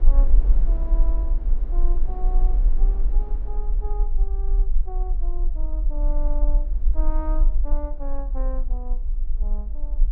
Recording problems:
rumble; below 40 Hz, strongest tone 18 Hz, SNR -14 dB
wind on the microphone; below 430 Hz, SNR 7 dB

